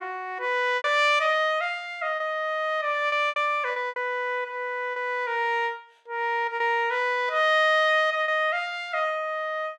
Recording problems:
packet loss; 5% of the sound replaced, filled with repeated pitch periods

